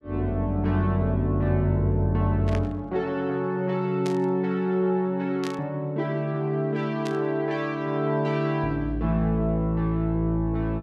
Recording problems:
burst of static; 4 times, first at 2.5 s; peak -8 dB vs average level

